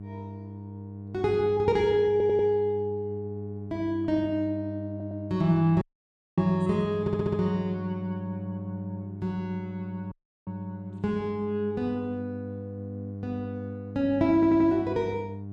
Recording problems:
electrical hum; 50 Hz, harmonics up to 700 Hz, SNR 11 dB
audio stuttering; 4 times, first at 2 s
audio cutting out; at 6 s for 0.5 s and at 10 s

